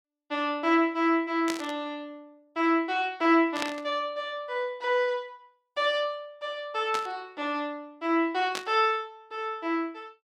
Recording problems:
burst of static; 4 times, first at 1.5 s; peak 0 dB vs average level

